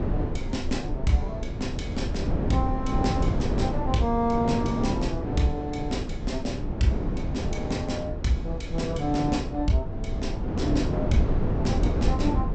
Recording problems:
low-pass filter; nothing above 8 kHz
rumble; below 68 Hz, SNR 6 dB
wind on the microphone; below 360 Hz, SNR 1 dB

